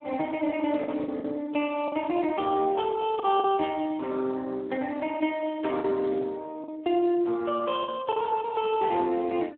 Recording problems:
telephone audio; 260 Hz to 3.1 kHz, Speex
lost packets; 4% of the sound replaced, filled with the last packet

